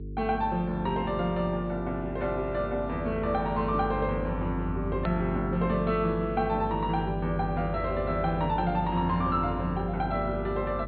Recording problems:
treble cut off; nothing above 4.5 kHz
hum; 50 Hz, harmonics up to 450 Hz, SNR 8 dB
click at an edit; at 5 s

